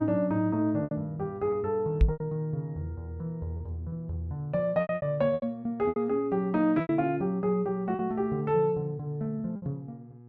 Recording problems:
electrical hum; 60 Hz, harmonics up to 840 Hz, SNR 21 dB
lost packets; 7% of the sound replaced, filled with repeated pitch periods
knock on the microphone; at 2 s; peak +10 dB vs average level

